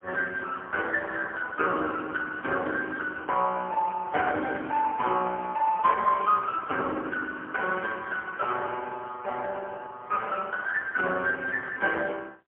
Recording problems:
telephone audio; 260 Hz to 2.2 kHz, AMR-NB, then MP3

